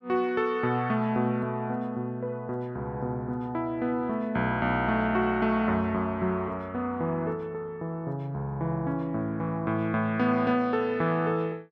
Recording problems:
none

